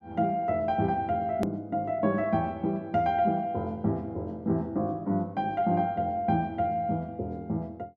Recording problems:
edit click; at 1.5 s

